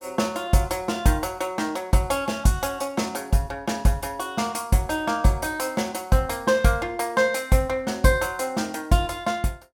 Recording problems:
none

